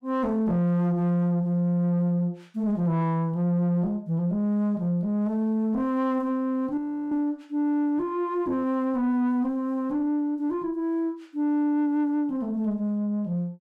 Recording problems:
distortion; soft clipping, signal-to-distortion ratio 10 dB
frozen audio; at 7 s

